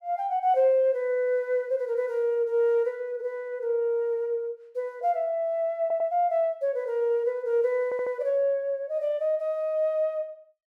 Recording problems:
audio stuttering; at 6 s and at 8 s

